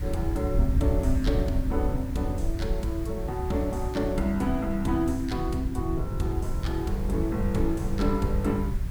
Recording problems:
background hiss; SNR 19 dB
wind on the microphone; below 88 Hz, SNR 2 dB

